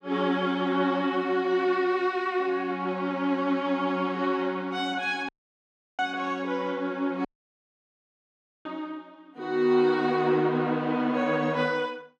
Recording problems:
dropout; at 5.5 s for 0.5 s and at 7.5 s for 1.5 s

